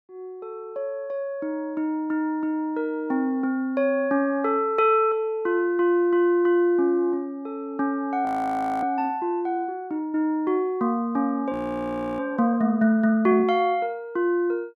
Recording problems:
frozen audio; at 8.5 s for 0.5 s and at 12 s for 0.5 s

